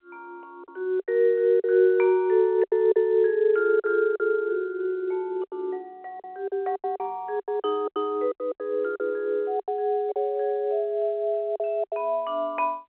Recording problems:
phone line; 340 Hz to 3.4 kHz, G.711
lost packets; 10% of the sound replaced, filled with silence

